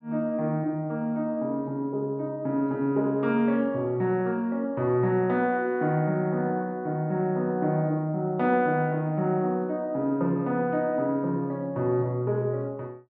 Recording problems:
none

